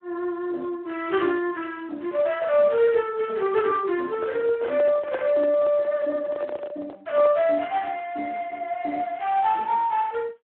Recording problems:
phone line; 300 Hz to 3.5 kHz, Speex
microphone handling noise; from 4 to 7.5 s; peak -4 dB vs average level

